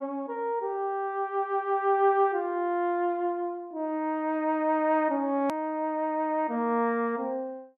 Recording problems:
click at an edit; at 5.5 s

